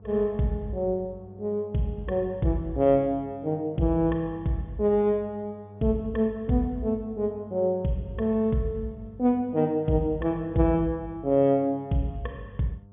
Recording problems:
low-pass filter; nothing above 3.6 kHz
hum; 50 Hz, harmonics up to 900 Hz, SNR 21 dB

